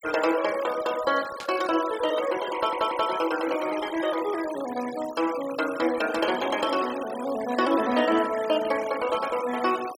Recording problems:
noise reduction artefacts; signal-to-artefact ratio 13 dB
static burst; at 1.5 s; peak -7 dB vs average level
stutter; at 2.5 s

